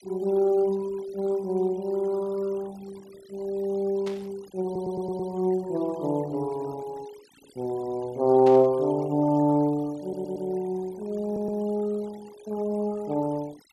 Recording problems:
noise reduction artefacts; signal-to-artefact ratio 24 dB
static burst; at 4 s and at 8.5 s; peak -10 dB vs average level
audio stuttering; at 4.5 s, at 10 s and at 11 s

